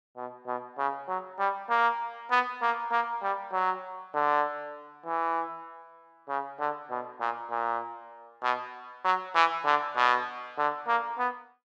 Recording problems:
none

